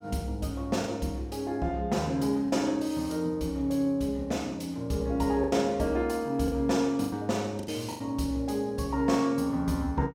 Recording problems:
packet loss; 4% of the sound replaced, filled with the last packet

